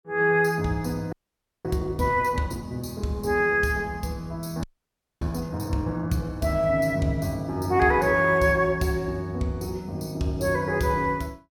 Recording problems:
frozen audio; at 1 s for 0.5 s and at 4.5 s for 0.5 s

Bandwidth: 18 kHz